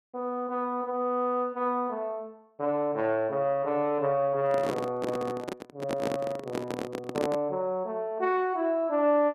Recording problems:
handling noise; from 4.5 to 7.5 s; peak +2 dB vs average level

